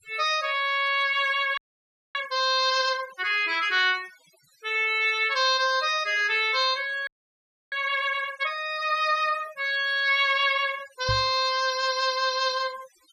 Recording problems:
denoising artefacts; signal-to-artefact ratio 20 dB
audio freezing; at 1.5 s for 0.5 s and at 7 s for 0.5 s
microphone thump; at 11 s; peak -3 dB vs average level

